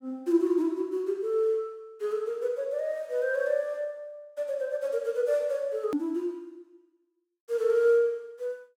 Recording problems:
click at an edit; at 6 s

